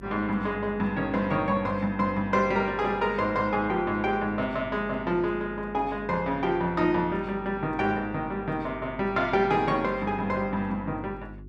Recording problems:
hum; 50 Hz, harmonics up to 400 Hz, SNR 18 dB

